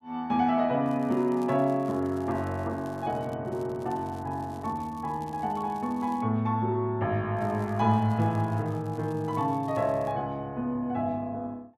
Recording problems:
crackling; from 1 to 3.5 s, from 3.5 to 6 s and from 7.5 to 10 s; loose cable, SNR 29 dB

